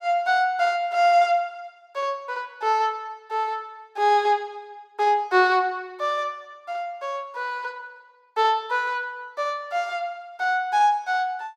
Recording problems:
none

